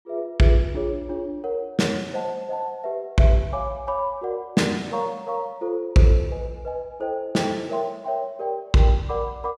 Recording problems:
none

